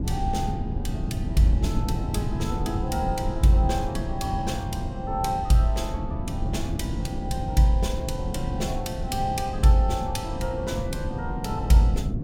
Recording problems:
low-frequency rumble; below 180 Hz, SNR 4 dB

